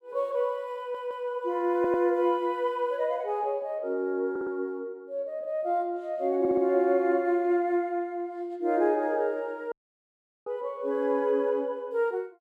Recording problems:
stutter; 4 times, first at 1 s
audio cutting out; at 9.5 s for 0.5 s

